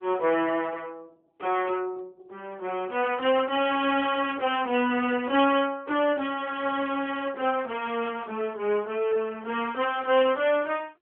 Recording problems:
phone line; 260 Hz to 3.3 kHz, AMR-NB

